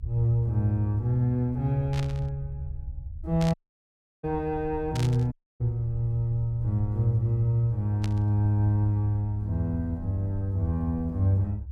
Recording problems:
low-frequency rumble; below 78 Hz, SNR 13 dB
burst of static; 4 times, first at 2 s; peak -7 dB vs average level
dropout; at 3.5 s for 0.5 s and at 5.5 s

